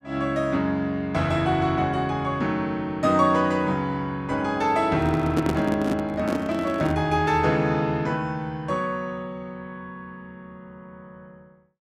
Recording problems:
handling noise; from 5 to 7 s; peak +3 dB vs average level

